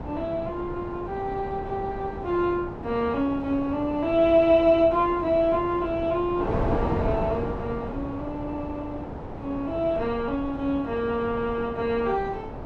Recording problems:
wind noise; below 660 Hz, SNR 9 dB

